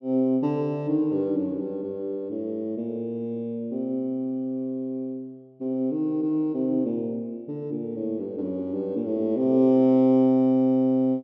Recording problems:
none

